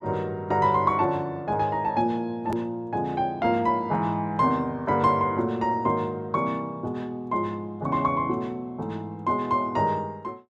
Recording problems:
edit click; at 2.5 s

